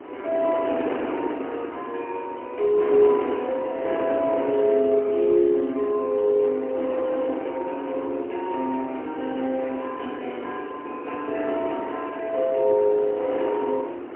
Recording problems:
phone line; 240 Hz to 3.1 kHz, AMR-NB, then MP3
wind on the microphone; below 740 Hz, SNR 9 dB

